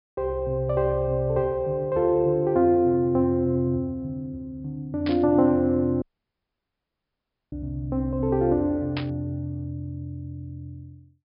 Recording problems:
low-pass filter; nothing above 5.5 kHz
burst of static; at 5 s and at 9 s; peak -5 dB vs average level
dropout; at 6 s for 1.5 s

